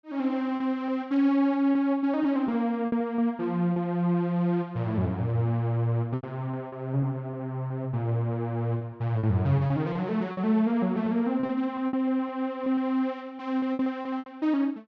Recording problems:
packet loss; 7% of the sound replaced, filled with repeated pitch periods

